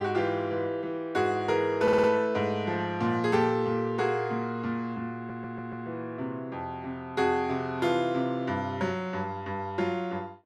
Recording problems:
stutter; at 2 s and at 5 s

